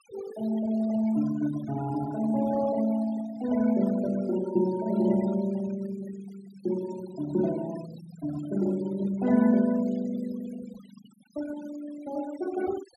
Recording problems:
denoising artefacts; signal-to-artefact ratio 17 dB

